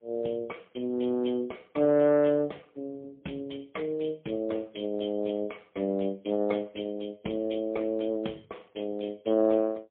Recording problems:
telephone audio; 170 Hz to 3.7 kHz, AMR-NB, then MP3

